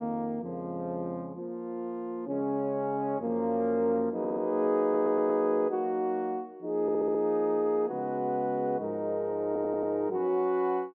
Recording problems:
audio stuttering; 4 times, first at 4 s

